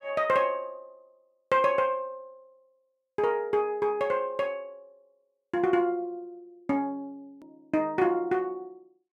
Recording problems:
edit click; at 7.5 s

